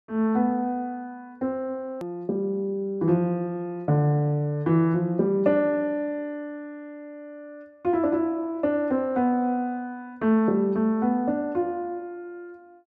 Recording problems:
hard cut with a click; at 2 s

